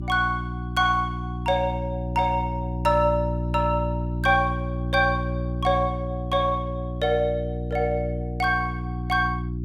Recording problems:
hum; 60 Hz, harmonics up to 360 Hz, SNR 5 dB

